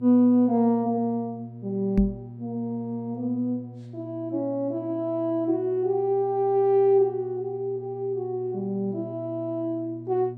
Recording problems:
hum; 60 Hz, harmonics up to 600 Hz, SNR 16 dB
knock on the microphone; at 2 s; peak +6 dB vs average level

